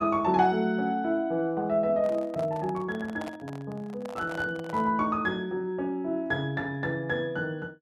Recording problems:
handling noise; from 2 to 5 s; peak -7 dB vs average level

